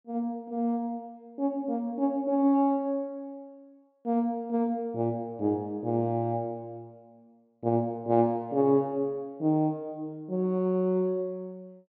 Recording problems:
treble missing; nothing above 8 kHz

